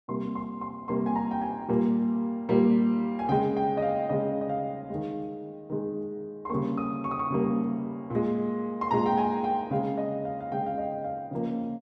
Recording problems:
none

